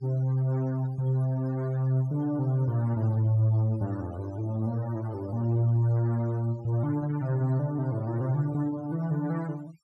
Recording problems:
noise reduction artefacts; signal-to-artefact ratio 24 dB

